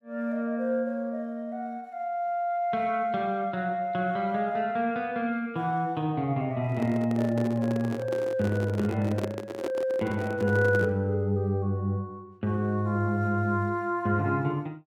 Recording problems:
handling noise; from 6.5 to 11 s; peak 0 dB vs average level

